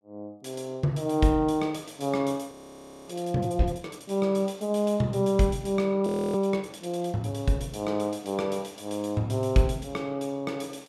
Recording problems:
audio freezing; at 2.5 s for 0.5 s and at 6 s

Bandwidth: 14.5 kHz